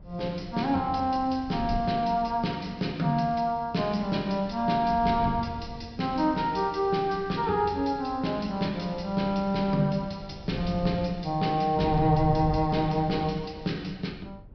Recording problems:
low-pass filter; nothing above 5.5 kHz
wind noise; below 130 Hz, SNR 15 dB

